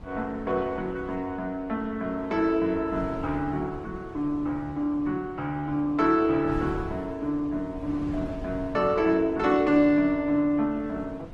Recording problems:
lossy codec; Opus, log-spectral distance 2 dB
wind noise; below 290 Hz, SNR 16 dB

